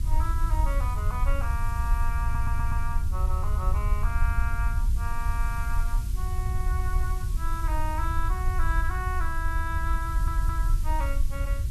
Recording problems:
electrical hum; 50 Hz, harmonics up to 350 Hz, SNR 19 dB
hiss; slope +3 dB per octave, SNR 13 dB
low-frequency rumble; below 68 Hz, SNR -6 dB
audio stuttering; at 2 s and at 10 s

